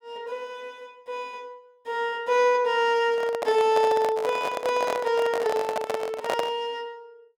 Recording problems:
handling noise; from 3 to 6.5 s; peak +1 dB vs average level

